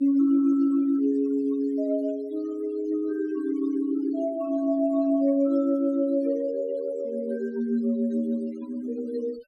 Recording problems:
noise reduction artefacts; signal-to-artefact ratio 26 dB

